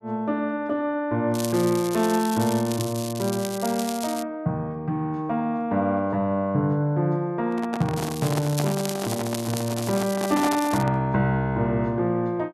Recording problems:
crackle; from 1.5 to 4 s and from 8 to 11 s; loose cable, SNR 10 dB
handling noise; from 7.5 to 11 s; peak -1 dB vs average level

